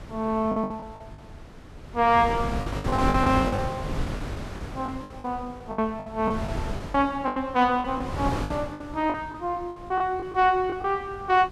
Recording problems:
wind noise; below 500 Hz, SNR 7 dB
packet loss; 13% of the sound replaced, filled with the last packet

